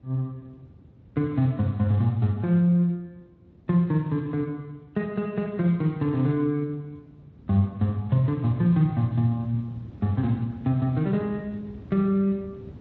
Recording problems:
codec artefacts; Speex, then AAC, log-spectral distance 2 dB, nothing above 7.8 kHz
low-frequency rumble; below 250 Hz, SNR 22 dB

